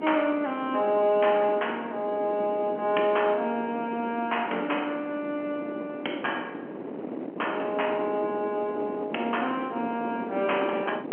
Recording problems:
phone line; 240 Hz to 3.2 kHz, G.711
wind on the microphone; below 530 Hz, SNR 9 dB

